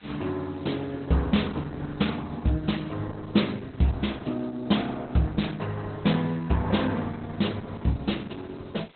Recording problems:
lossy codec; Opus, log-spectral distance 9 dB, nothing above 4 kHz
hiss; SNR 28 dB

